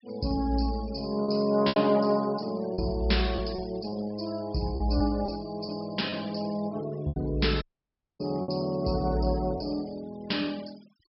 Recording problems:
low-pass filter; nothing above 5.4 kHz
denoising artefacts; signal-to-artefact ratio 22 dB
lost packets; 6% of the sound replaced, filled with repeated pitch periods
dropout; at 7.5 s for 0.5 s

